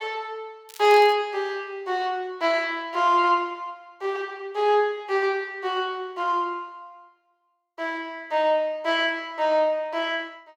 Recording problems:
crackling; at 0.5 s; loose cable, SNR 20 dB

